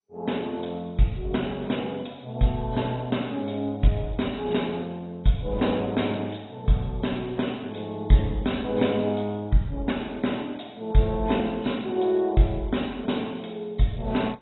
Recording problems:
codec artefacts; AAC, then MP2, log-spectral distance 5 dB, nothing above 3.8 kHz

